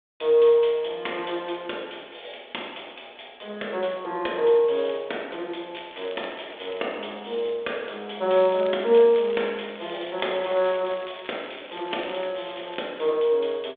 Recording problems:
telephone audio; 300 Hz to 3.6 kHz, G.726
crackling; from 6 to 7 s and from 8.5 to 13 s; loose cable, SNR 19 dB

